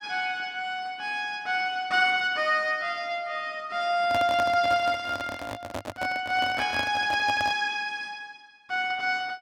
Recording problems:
handling noise; from 4 to 7.5 s; peak -2 dB vs average level

